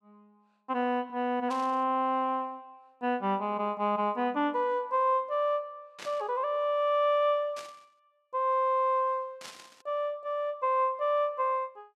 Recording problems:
static burst; 4 times, first at 1.5 s; peak -9 dB vs average level

